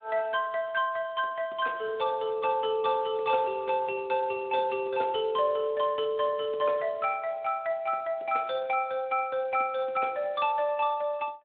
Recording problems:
phone line; 260 Hz to 3.8 kHz, Speex

